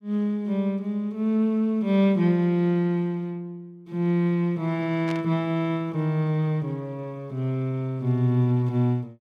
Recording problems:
burst of static; at 5 s; peak -9 dB vs average level

